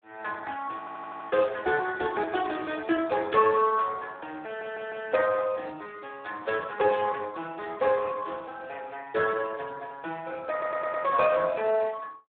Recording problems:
phone line; 190 Hz to 3.6 kHz, Speex
audio stuttering; at 1 s, at 4.5 s and at 11 s
burst of static; at 3.5 s; peak -6 dB vs average level

